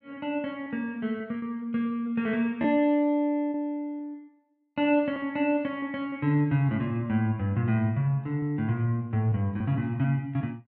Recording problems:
lost packets; 3% of the sound replaced, filled with repeated pitch periods

